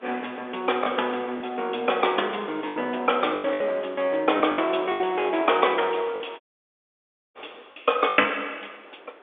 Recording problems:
telephone audio; 300 Hz to 3.6 kHz, G.711
wind noise; below 1.6 kHz, SNR 23 dB
packet loss; 8% of the sound replaced, filled with the last packet
dropout; at 6.5 s for 1 s

